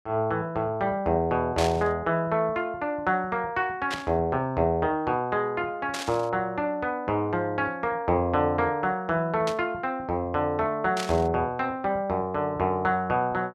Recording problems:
burst of static; 5 times, first at 1.5 s; peak -1 dB vs average level

